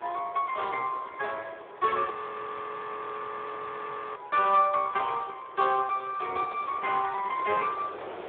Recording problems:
telephone audio; 280 Hz to 3.5 kHz, Speex
wind on the microphone; below 1 kHz, SNR 18 dB
frozen audio; at 2 s for 2 s

